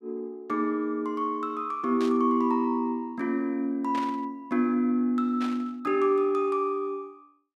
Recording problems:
static burst; at 2 s, at 4 s and at 5.5 s; peak -8 dB vs average level

